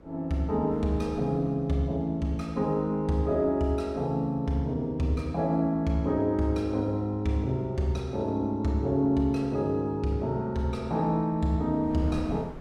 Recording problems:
mains hum; 60 Hz, harmonics up to 660 Hz, SNR 27 dB
wind on the microphone; below 400 Hz, SNR 23 dB

